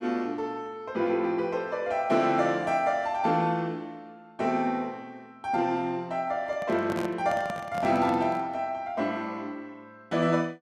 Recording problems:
microphone handling noise; from 6.5 to 8.5 s; peak -3 dB vs average level

